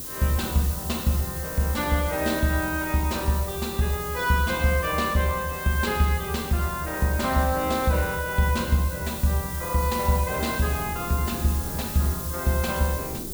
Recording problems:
hiss; SNR 9 dB
wind noise; below 350 Hz, SNR 20 dB

